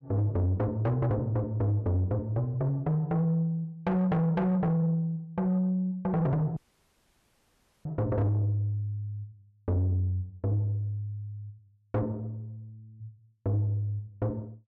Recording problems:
distorted audio; soft clipping, signal-to-distortion ratio 11 dB
dropout; at 6.5 s for 1.5 s

